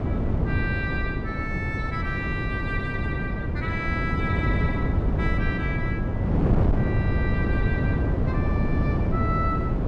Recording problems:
wind on the microphone; below 240 Hz, SNR -6 dB

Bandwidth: 13 kHz